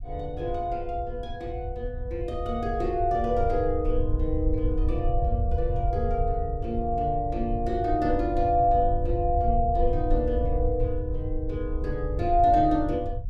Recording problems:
rumble; below 78 Hz, SNR 4 dB

